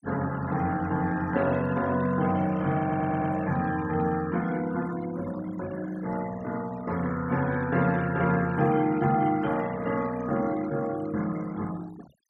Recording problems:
denoising artefacts; signal-to-artefact ratio 18 dB
audio stuttering; at 3 s

